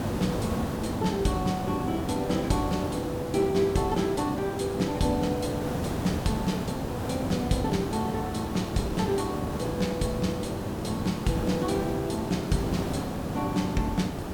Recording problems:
hiss; slope -8 dB per octave, SNR 3 dB

